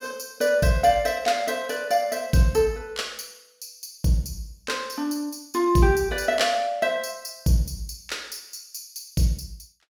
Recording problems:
none

